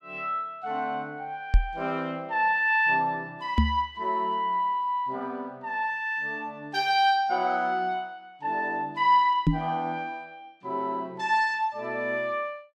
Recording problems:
microphone thump; at 1.5 s, at 3.5 s and at 9.5 s; peak +8 dB vs average level

